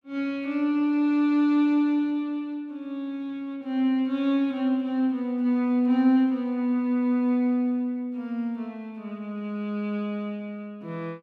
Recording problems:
none

